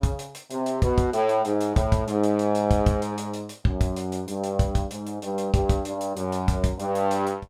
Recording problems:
none

